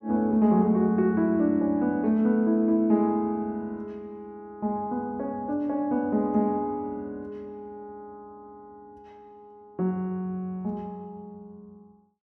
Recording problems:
none

